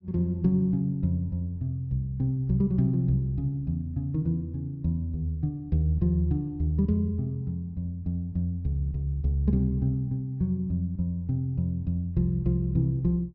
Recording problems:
treble missing; nothing above 5.9 kHz

